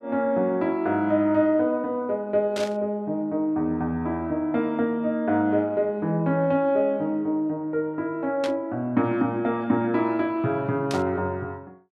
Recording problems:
static burst; at 2.5 s, at 8.5 s and at 11 s; peak -5 dB vs average level

